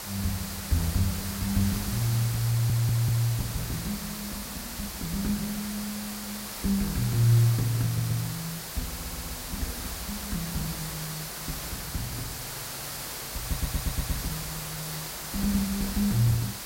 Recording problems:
electrical hum; 50 Hz, harmonics up to 350 Hz, SNR 26 dB
hiss; slope -1 dB per octave, SNR 5 dB
wind on the microphone; below 550 Hz, SNR 32 dB
audio stuttering; 4 times, first at 2.5 s

